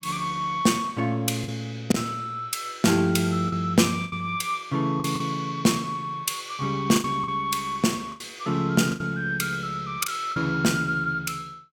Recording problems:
lost packets; 6% of the sound replaced, filled with the last packet

